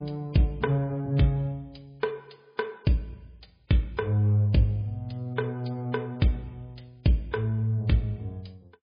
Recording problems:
lossy codec; MP3, log-spectral distance 2 dB, nothing above 11.3 kHz

